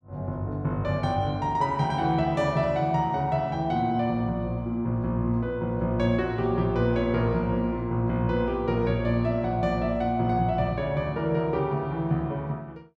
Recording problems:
none

